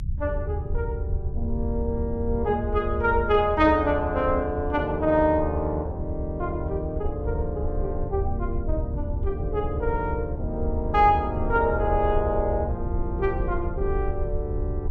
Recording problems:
rumble; below 78 Hz, SNR 5 dB

